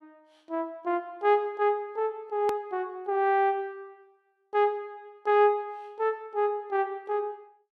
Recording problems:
hard cut with a click; at 2.5 s

